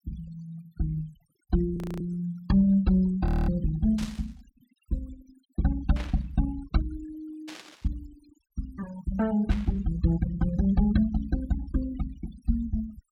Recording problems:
denoising artefacts; signal-to-artefact ratio 20 dB
audio freezing; at 2 s and at 3.5 s
burst of static; 4 times, first at 4 s; peak -8 dB vs average level

